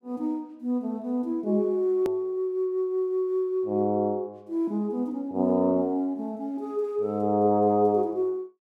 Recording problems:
edit click; at 2 s

